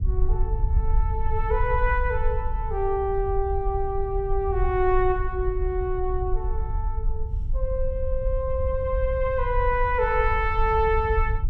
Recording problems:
low-frequency rumble; below 62 Hz, SNR 3 dB

